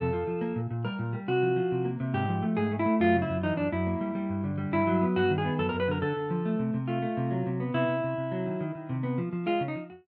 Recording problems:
none

